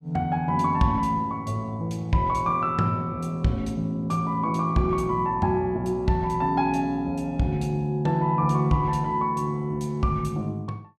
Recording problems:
none

